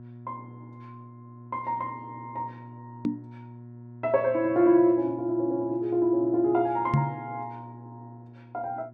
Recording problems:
electrical hum; 60 Hz, harmonics up to 720 Hz, SNR 19 dB
microphone thump; at 3 s and at 7 s; peak +5 dB vs average level

